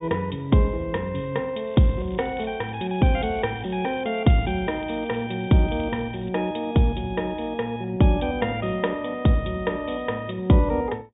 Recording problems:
treble cut off; nothing above 3.7 kHz
crackling; from 1.5 to 6.5 s; loose cable, SNR 27 dB

